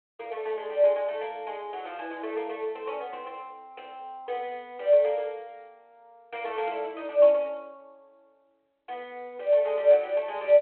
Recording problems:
telephone audio; 280 Hz to 3.3 kHz, G.726

